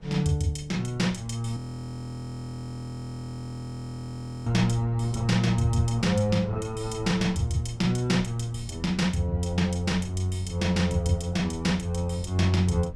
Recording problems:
wind on the microphone; below 130 Hz, SNR 17 dB
audio freezing; at 1.5 s for 3 s

